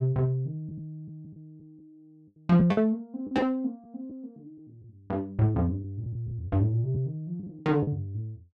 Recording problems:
packet loss; 7% of the sound replaced, filled with the last packet

